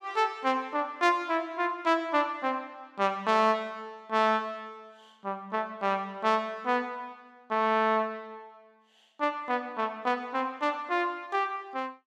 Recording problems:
none

